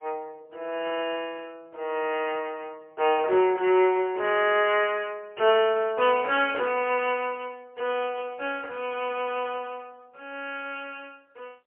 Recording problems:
phone line; 320 Hz to 3.3 kHz, AMR-NB, then MP3

